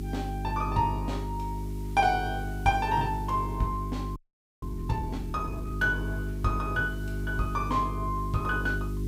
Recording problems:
electrical hum; 50 Hz, harmonics up to 400 Hz, SNR 4 dB
background hiss; slope +1 dB per octave, SNR 25 dB
audio freezing; at 4 s

